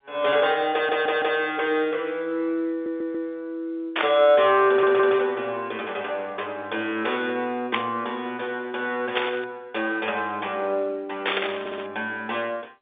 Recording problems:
telephone audio; 280 Hz to 3.7 kHz, G.711
audio stuttering; 4 times, first at 0.5 s
burst of static; 4 times, first at 4 s; peak +5 dB vs average level

